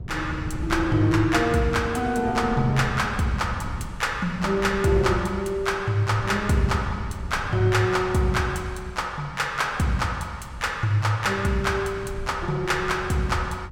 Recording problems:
wind on the microphone; below 150 Hz, SNR 13 dB

